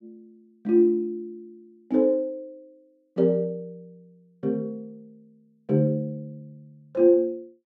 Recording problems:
none

